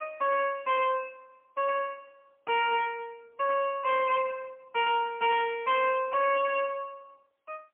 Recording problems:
telephone audio; 260 Hz to 3.2 kHz, AMR-NB, then MP3
distortion; hard clipping, uneven, signal-to-distortion ratio 10 dB

